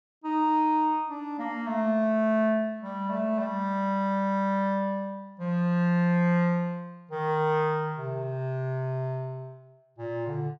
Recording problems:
none

